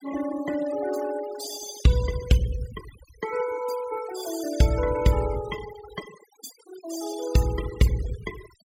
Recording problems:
denoising artefacts; signal-to-artefact ratio 13 dB

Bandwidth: 16.5 kHz